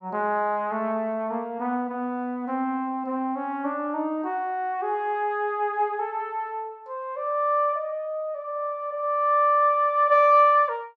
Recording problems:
none

